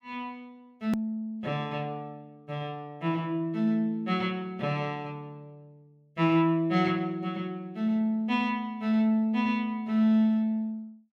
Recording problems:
hard cut with a click; at 1 s

